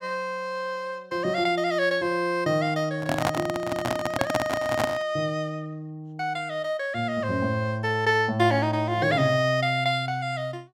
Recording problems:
handling noise; from 3 to 5 s; peak +4 dB vs average level

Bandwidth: 16.5 kHz